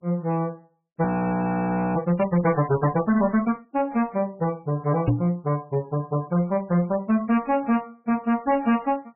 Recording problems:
lossy compression; MP3, log-spectral distance 2 dB, nothing above 2.4 kHz
distorted audio; hard clipping, signal-to-distortion ratio 10 dB
frozen audio; at 1 s for 1 s
knock on the microphone; at 5 s; peak +6 dB vs average level

